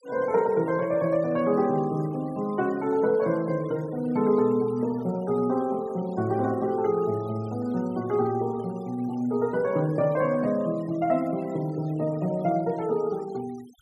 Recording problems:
noise reduction artefacts; signal-to-artefact ratio 25 dB

